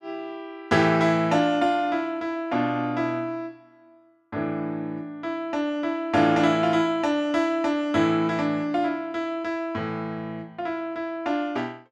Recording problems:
none

